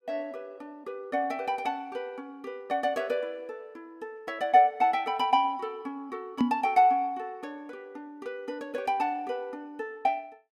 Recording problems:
microphone thump; at 6.5 s; peak +7 dB vs average level

